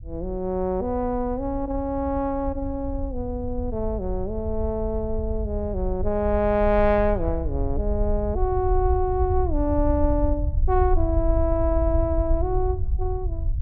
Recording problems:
low-frequency rumble; below 74 Hz, SNR 4 dB

